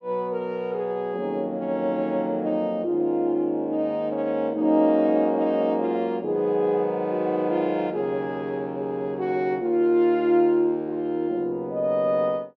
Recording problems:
none

